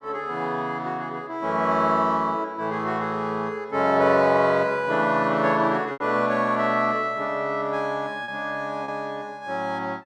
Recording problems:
packet loss; 1.6% of the sound replaced, filled with repeated pitch periods

